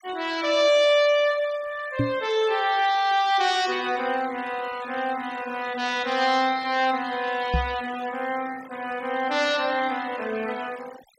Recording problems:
noise reduction artefacts; signal-to-artefact ratio 18 dB
microphone thump; at 2 s and at 7.5 s; peak +3 dB vs average level

